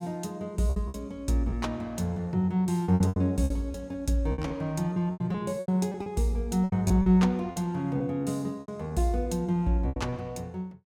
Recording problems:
packet loss; 11% of the sound replaced, filled with repeated pitch periods

